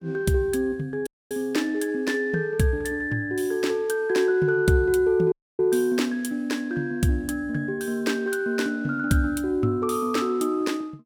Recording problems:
audio cutting out; at 1 s and at 5.5 s

